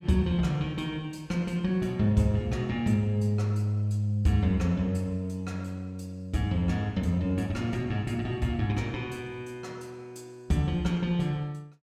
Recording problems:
none

